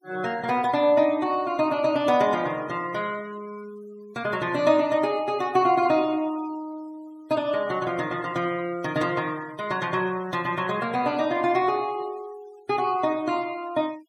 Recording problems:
denoising artefacts; signal-to-artefact ratio 23 dB

